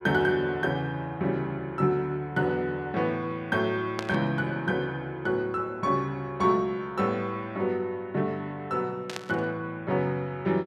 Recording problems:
burst of static; at 4 s and at 9 s; peak -2 dB vs average level

